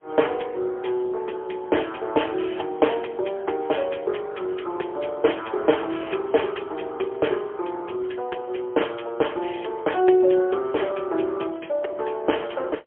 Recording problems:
telephone audio; 300 Hz to 3.3 kHz, AMR-NB, then MP3

